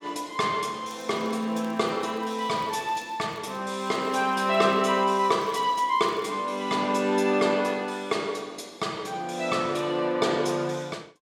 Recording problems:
crackle; from 1 to 3.5 s and from 4 to 6.5 s; loose cable, SNR 29 dB

